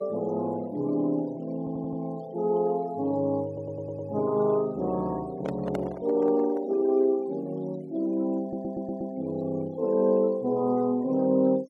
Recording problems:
noise reduction artefacts; signal-to-artefact ratio 25 dB
stutter; at 1.5 s, at 3.5 s and at 8.5 s
microphone handling noise; from 5.5 to 7 s; peak -3 dB vs average level

